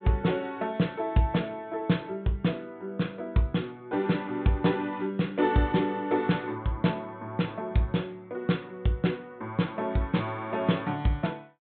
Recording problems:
treble cut off; nothing above 4 kHz

